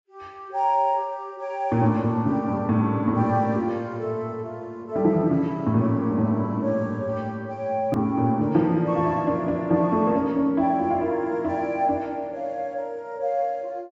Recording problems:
treble missing; nothing above 8 kHz
hard cut with a click; at 8 s

